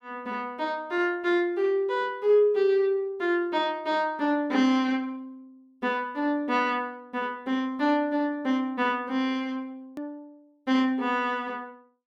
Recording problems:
edit click; at 10 s

